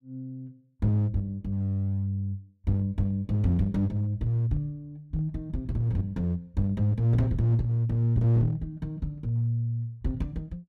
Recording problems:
distorted audio; hard clipping, uneven, signal-to-distortion ratio 11 dB

